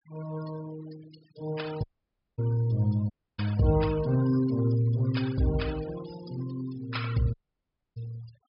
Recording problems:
low-pass filter; nothing above 5.5 kHz
noise reduction artefacts; signal-to-artefact ratio 17 dB
audio cutting out; at 2 s for 0.5 s, at 3 s and at 7.5 s for 0.5 s

